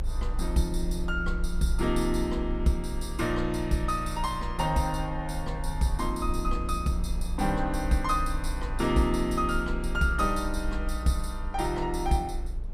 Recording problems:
low-frequency rumble; below 56 Hz, strongest tone 28 Hz, SNR 6 dB

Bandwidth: 15.5 kHz